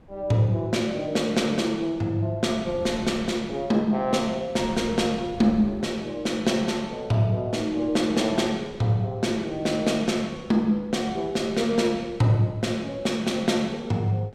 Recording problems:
wind noise; below 290 Hz, SNR 22 dB

